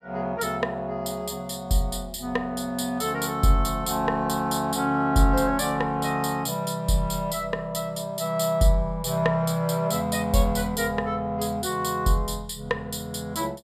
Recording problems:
none

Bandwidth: 14.5 kHz